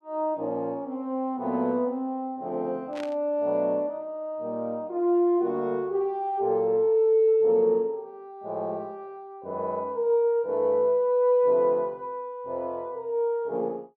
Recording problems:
static burst; at 3 s; peak -12 dB vs average level

